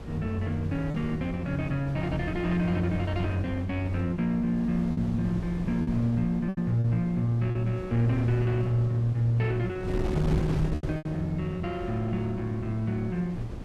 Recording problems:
wind on the microphone; below 270 Hz, SNR 9 dB
packet loss; 4% of the sound replaced, filled with repeated pitch periods

